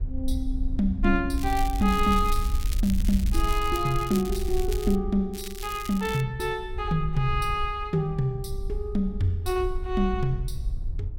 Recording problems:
wind noise; below 58 Hz, SNR 5 dB
crackling; from 1.5 to 5 s and at 5.5 s; loose cable, SNR 13 dB

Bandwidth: 16.5 kHz